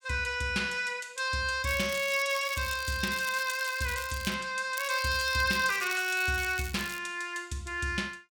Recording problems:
crackling; from 1.5 to 4.5 s and from 5 to 7 s; loose cable, SNR 12 dB

